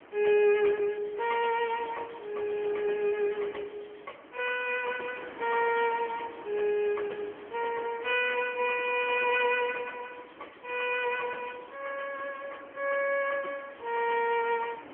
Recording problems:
telephone audio; 280 Hz to 3.2 kHz, AMR-NB
wind noise; below 1.7 kHz, SNR 19 dB

